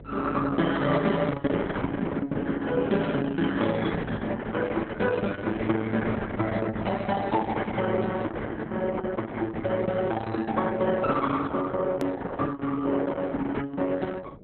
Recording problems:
lossy codec; Opus, log-spectral distance 4 dB
hum; 50 Hz, harmonics up to 600 Hz, SNR 20 dB
click at an edit; at 12 s

